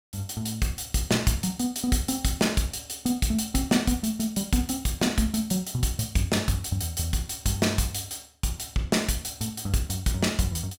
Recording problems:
none

